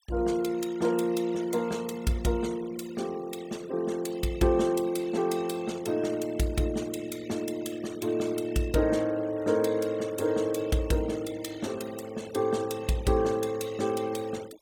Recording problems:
noise reduction artefacts; signal-to-artefact ratio 19 dB

